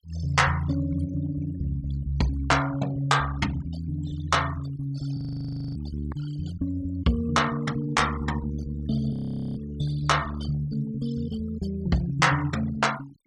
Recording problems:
denoising artefacts; signal-to-artefact ratio 18 dB
audio freezing; at 5 s for 0.5 s and at 9 s

